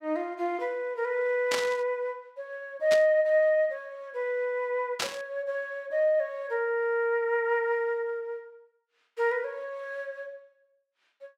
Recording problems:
burst of static; at 1.5 s, at 3 s and at 5 s; peak +2 dB vs average level

